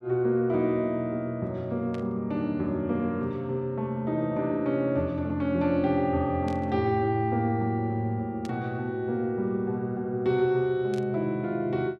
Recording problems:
burst of static; 4 times, first at 2 s; peak -13 dB vs average level

